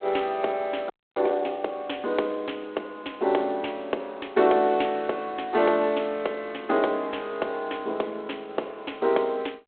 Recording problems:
telephone audio; 300 Hz to 3.4 kHz, G.726
frozen audio; at 1 s

